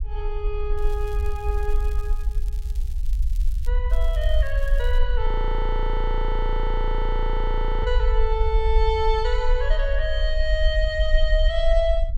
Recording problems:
low-frequency rumble; below 48 Hz, strongest tone 28 Hz, SNR -2 dB
crackling; from 1 to 3.5 s and from 4 to 5 s; loose cable, SNR 23 dB
audio freezing; at 5.5 s for 2.5 s

